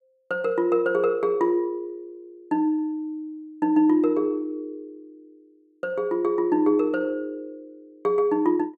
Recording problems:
none

